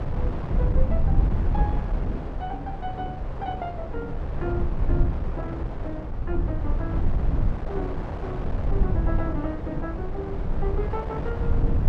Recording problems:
low-frequency rumble; below 84 Hz, SNR -6 dB
wind noise; below 860 Hz, SNR 3 dB

